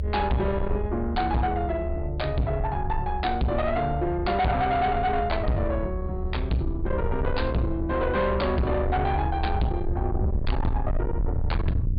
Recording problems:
treble missing; nothing above 4.6 kHz
distortion; soft clipping, signal-to-distortion ratio 6 dB
hum; 50 Hz, harmonics up to 600 Hz, SNR 20 dB
low-frequency rumble; below 86 Hz, SNR 4 dB

